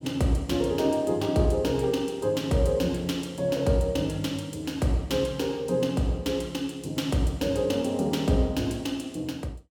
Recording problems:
none

